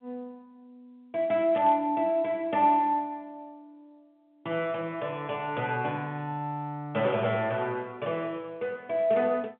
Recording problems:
phone line; 130 Hz to 3.6 kHz, G.711
burst of static; at 1.5 s; peak -11 dB vs average level

